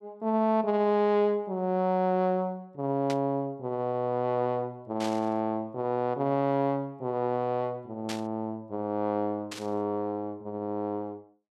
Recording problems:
burst of static; 4 times, first at 3 s; peak -3 dB vs average level

